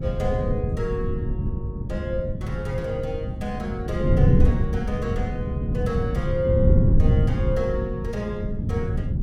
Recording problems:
wind on the microphone; below 150 Hz, SNR -4 dB

